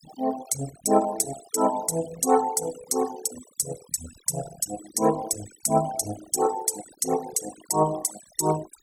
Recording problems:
noise reduction artefacts; signal-to-artefact ratio 12 dB

